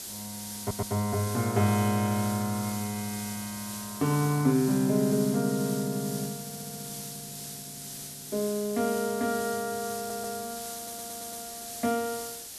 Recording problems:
background hiss; SNR 9 dB
audio stuttering; 4 times, first at 0.5 s

